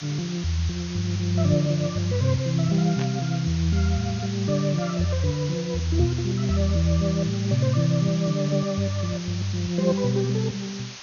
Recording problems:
low-pass filter; nothing above 6.7 kHz
hiss; slope +2 dB per octave, SNR 13 dB
burst of static; at 3 s; peak -8 dB vs average level

